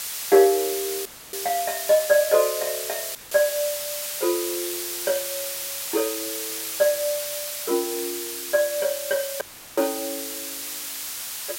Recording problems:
background hiss; slope +3 dB per octave, SNR 4 dB
dropout; at 1 s, at 3 s and at 9.5 s; filled with static

